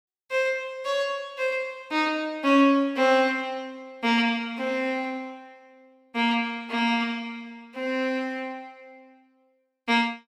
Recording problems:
none

